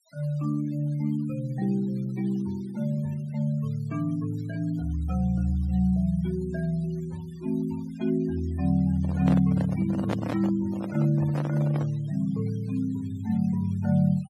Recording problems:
noise reduction artefacts; signal-to-artefact ratio 24 dB
handling noise; from 9 to 12 s; peak 0 dB vs average level

